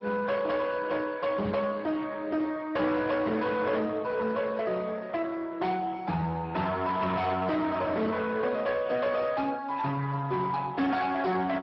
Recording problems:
lossy codec; MP2, then Speex, log-spectral distance 3 dB
distorted audio; hard clipping, uneven, signal-to-distortion ratio 10 dB
knock on the microphone; at 1.5 s; peak -5 dB vs average level

